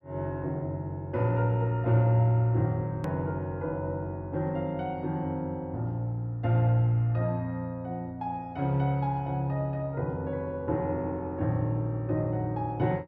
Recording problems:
hard cut with a click; at 3 s

